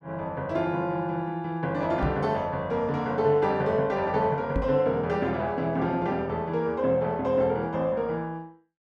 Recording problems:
knock on the microphone; at 2 s and at 4.5 s; peak +2 dB vs average level

